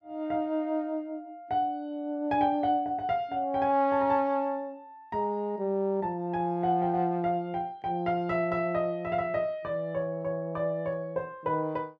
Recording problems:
none

